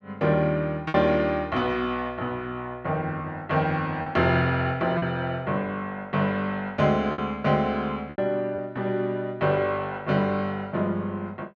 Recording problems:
packet loss; 3% of the sound replaced, filled with repeated pitch periods

